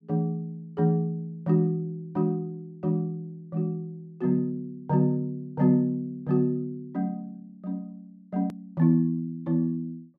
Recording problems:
hard cut with a click; at 8.5 s

